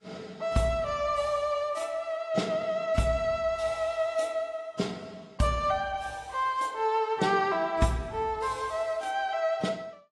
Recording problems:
lossy codec; AAC, log-spectral distance 2 dB

